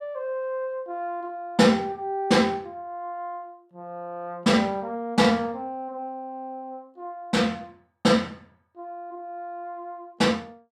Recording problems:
none

